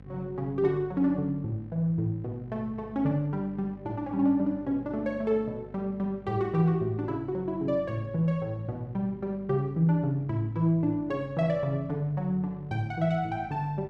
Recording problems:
hum; 50 Hz, harmonics up to 800 Hz, SNR 21 dB

